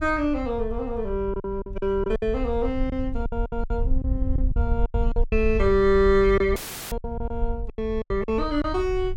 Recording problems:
wind noise; below 64 Hz, SNR 6 dB
packet loss; 11% of the sound replaced, filled with silence
dropout; at 6.5 s; filled with static

